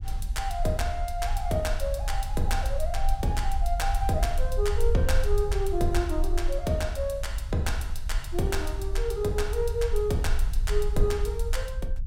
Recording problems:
rumble; below 52 Hz, strongest tone 20 Hz, SNR 2 dB

